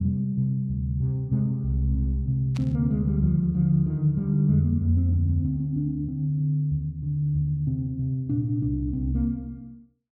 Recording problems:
static burst; at 2.5 s; peak -13 dB vs average level

